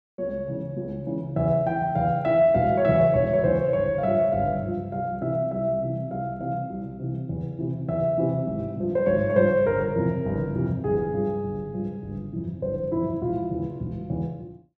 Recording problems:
none

